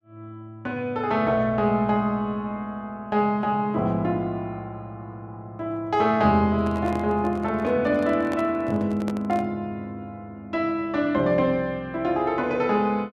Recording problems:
handling noise; from 6.5 to 9.5 s; peak -4 dB vs average level

